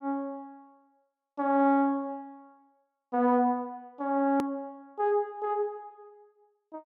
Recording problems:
click at an edit; at 4.5 s

